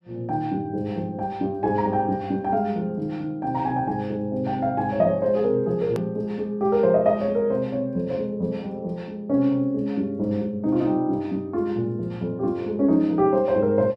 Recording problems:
edit click; at 6 s

